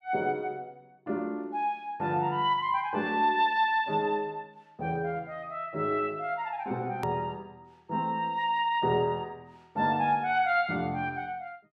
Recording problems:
hard cut with a click; at 7 s

